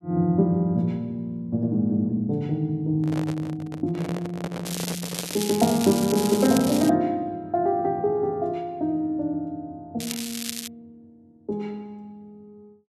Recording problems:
microphone handling noise; from 3 to 5.5 s; peak -4 dB vs average level
crackling; from 4.5 to 7 s and at 10 s; loose cable, SNR 7 dB

